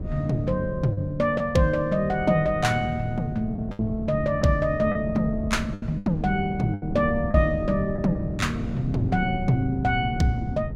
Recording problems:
wind noise; below 200 Hz, SNR 9 dB
packet loss; 5% of the sound replaced, filled with the last packet

